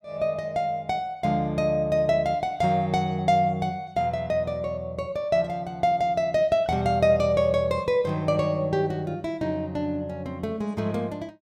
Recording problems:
none

